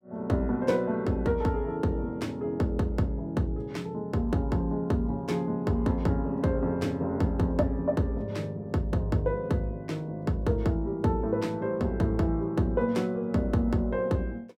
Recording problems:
none

